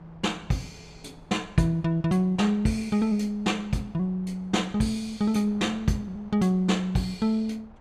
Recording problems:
wind noise; below 710 Hz, SNR 25 dB

